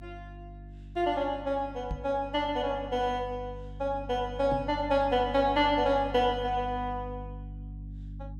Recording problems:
mains hum; 50 Hz, harmonics up to 300 Hz, SNR 14 dB
microphone thump; at 2 s and at 4.5 s; peak -3 dB vs average level

